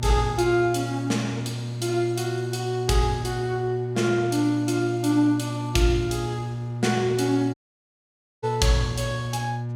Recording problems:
electrical hum; 60 Hz, harmonics up to 840 Hz, SNR 6 dB
dropout; at 7.5 s for 1 s

